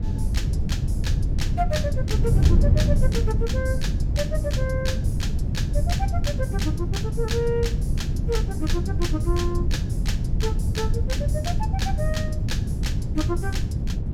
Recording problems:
wind on the microphone; below 130 Hz, SNR -6 dB

